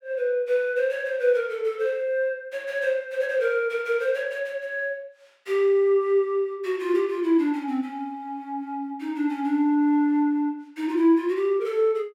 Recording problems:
none

